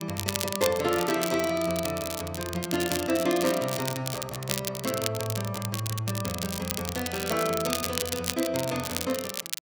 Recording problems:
crackle; vinyl, SNR 4 dB

